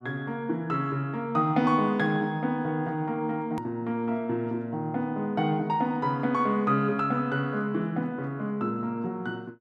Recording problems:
hard cut with a click; at 3.5 s

